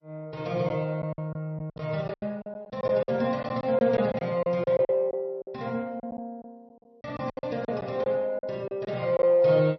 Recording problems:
lossy compression; MP3, then MP2, log-spectral distance 2 dB, nothing above 5.2 kHz
packet loss; 12% of the sound replaced, filled with silence

